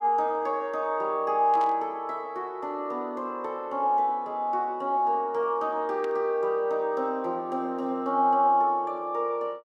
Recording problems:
static burst; at 1.5 s and at 6 s; peak -15 dB vs average level

